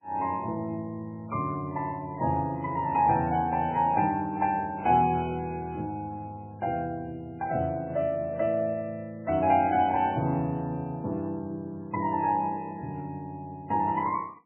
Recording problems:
codec artefacts; MP3, log-spectral distance 2 dB, nothing above 2.5 kHz

